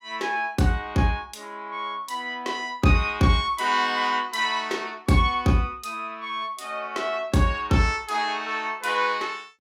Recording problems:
none

